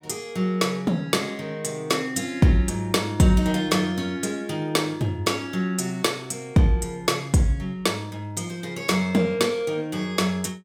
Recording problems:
none

